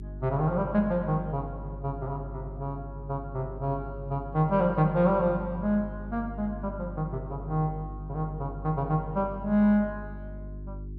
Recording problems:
hum; 50 Hz, harmonics up to 400 Hz, SNR 11 dB

